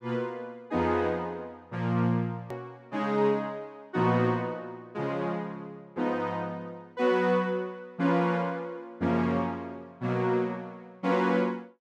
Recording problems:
click at an edit; at 2.5 s

